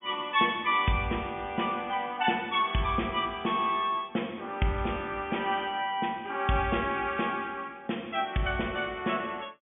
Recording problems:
treble cut off; nothing above 3.5 kHz

